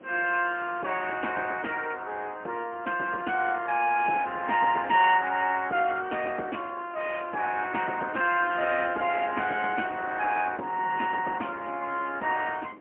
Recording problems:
phone line; 280 Hz to 3.1 kHz, AMR-NB, then MP3
wind on the microphone; below 600 Hz, SNR 20 dB

